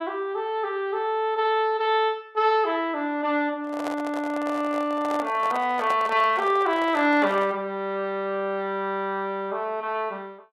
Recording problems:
microphone handling noise; from 3.5 to 7.5 s; peak -3 dB vs average level

